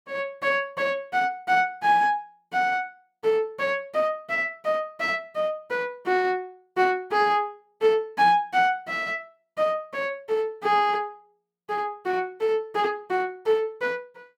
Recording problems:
none

